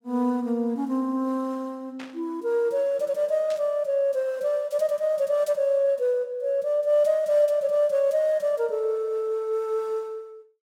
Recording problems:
static burst; at 2 s and at 3.5 s; peak -12 dB vs average level

